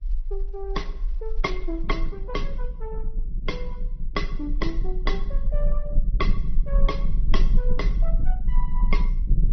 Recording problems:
treble cut off; nothing above 5.8 kHz
lossy compression; Vorbis, then Opus, log-spectral distance 2 dB
low-frequency rumble; below 36 Hz, strongest tone 18 Hz, SNR -5 dB

